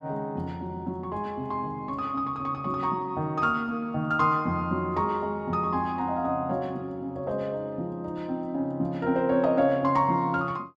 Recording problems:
none

